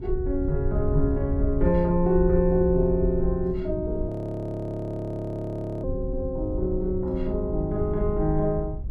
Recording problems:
rumble; below 110 Hz, SNR 12 dB
wind on the microphone; below 74 Hz, SNR 6 dB
audio freezing; at 4 s for 2 s

